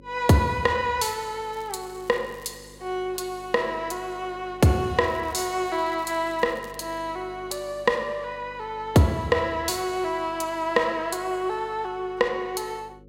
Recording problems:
hum; 50 Hz, harmonics up to 550 Hz, SNR 23 dB
crackling; from 1.5 to 2.5 s and from 5 to 7 s; loose cable, SNR 27 dB

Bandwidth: 16 kHz